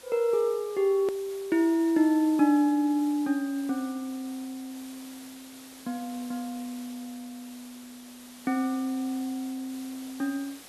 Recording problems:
hiss; slope -2 dB per octave, SNR 19 dB
hard cut with a click; at 1 s

